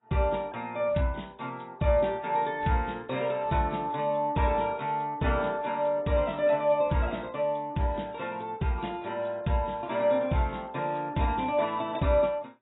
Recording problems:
codec artefacts; AAC, log-spectral distance 3 dB, nothing above 3.8 kHz

